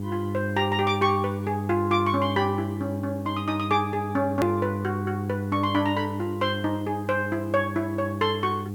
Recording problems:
electrical hum; 50 Hz, harmonics up to 800 Hz, SNR 5 dB
background hiss; SNR 28 dB
edit click; at 4.5 s

